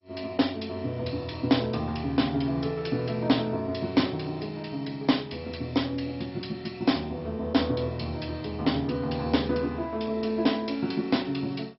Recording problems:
lossy compression; MP2, log-spectral distance 5 dB, nothing above 5.5 kHz

